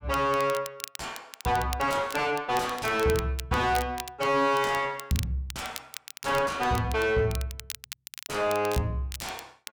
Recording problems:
distortion; soft clipping, signal-to-distortion ratio 6 dB
crackle; vinyl, SNR 13 dB

